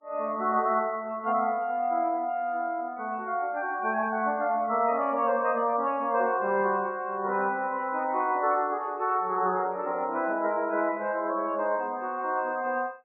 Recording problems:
lossy compression; MP3, then MP3, log-spectral distance 2 dB, nothing above 2.6 kHz

